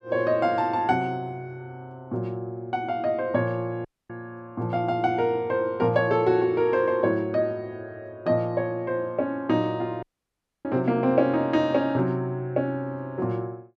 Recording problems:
audio cutting out; at 4 s and at 10 s for 0.5 s

